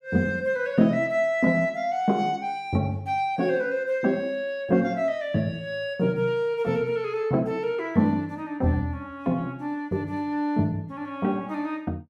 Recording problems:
none

